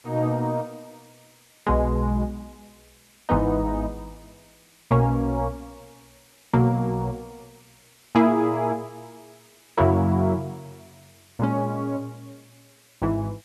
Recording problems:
background hiss; SNR 29 dB

